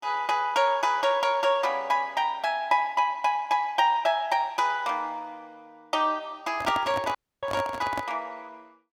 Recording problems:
handling noise; from 6.5 to 8 s; peak -1 dB vs average level
dropout; at 7 s

